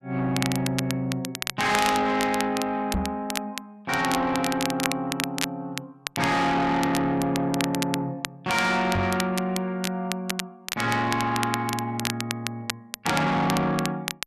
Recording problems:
distortion; soft clipping, signal-to-distortion ratio 7 dB
crackle; vinyl, SNR 7 dB
knock on the microphone; at 3 s and at 9 s; peak +3 dB vs average level

